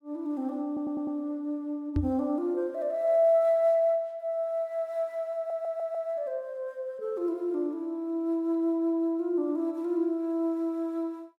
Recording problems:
audio stuttering; at 0.5 s and at 5.5 s
microphone bump; at 2 s; peak +5 dB vs average level

